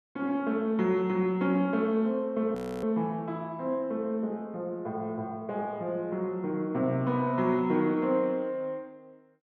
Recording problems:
frozen audio; at 2.5 s

